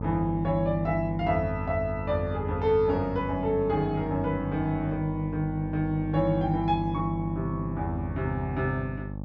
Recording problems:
treble missing; nothing above 8 kHz
hum; 50 Hz, harmonics up to 900 Hz, SNR 6 dB

